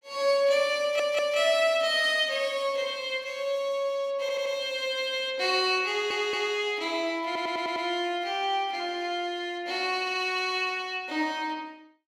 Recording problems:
stutter; 4 times, first at 1 s

